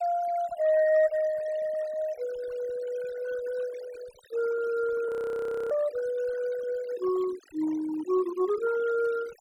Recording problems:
noise reduction artefacts; signal-to-artefact ratio 18 dB
audio freezing; at 5 s for 0.5 s

